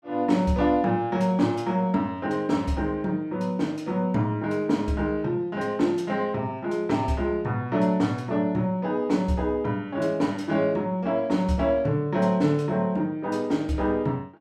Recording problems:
none

